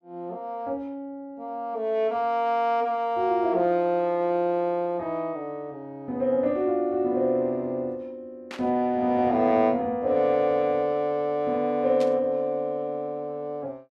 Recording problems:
burst of static; at 8.5 s and at 12 s; peak -9 dB vs average level

